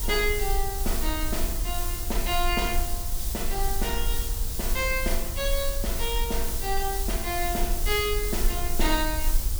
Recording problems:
hiss; SNR 2 dB
rumble; below 46 Hz, strongest tone 20 Hz, SNR 3 dB

